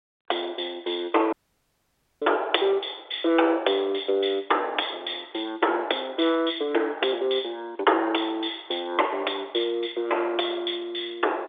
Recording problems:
phone line; 300 Hz to 3.6 kHz, G.711
dropout; at 1.5 s for 1 s

